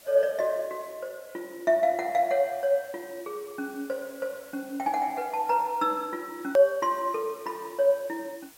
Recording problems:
hiss; slope -1 dB per octave, SNR 23 dB
click at an edit; at 6.5 s

